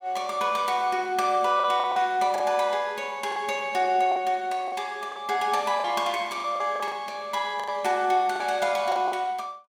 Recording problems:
packet loss; 8% of the sound replaced, filled with the last packet

